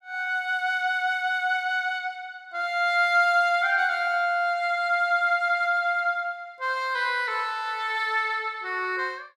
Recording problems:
none

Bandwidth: 14.5 kHz